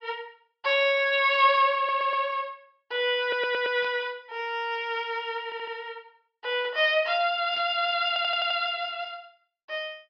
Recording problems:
low-pass filter; nothing above 5.5 kHz
audio stuttering; 4 times, first at 2 s
static burst; at 4 s and at 7.5 s; peak -14 dB vs average level

